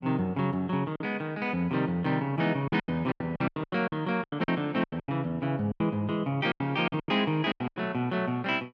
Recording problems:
lost packets; 14% of the sound replaced, filled with silence

